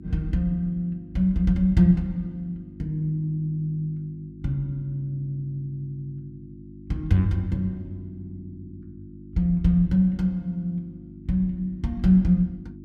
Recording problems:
hum; 50 Hz, harmonics up to 350 Hz, SNR 18 dB

